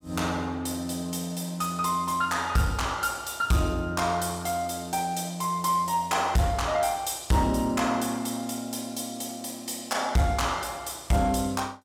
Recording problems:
distorted audio; soft clipping, signal-to-distortion ratio 10 dB

